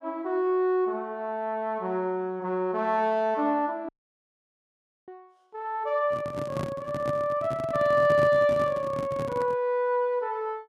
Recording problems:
audio cutting out; at 4 s for 1 s
handling noise; from 6 to 9.5 s; peak -2 dB vs average level

